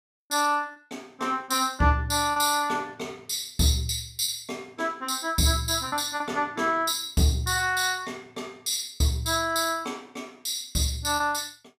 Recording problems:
lost packets; 3% of the sound replaced, filled with repeated pitch periods

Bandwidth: 15 kHz